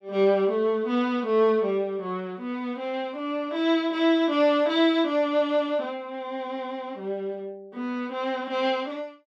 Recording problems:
none

